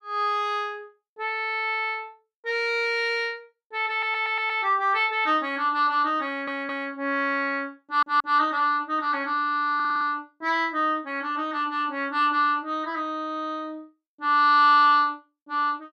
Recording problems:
audio stuttering; 4 times, first at 4 s

